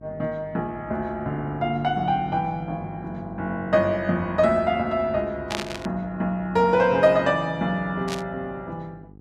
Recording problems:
electrical hum; 50 Hz, harmonics up to 850 Hz, SNR 20 dB
static burst; at 5.5 s and at 8 s; peak -1 dB vs average level

